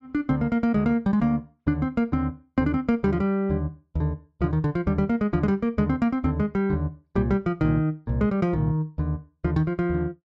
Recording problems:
none

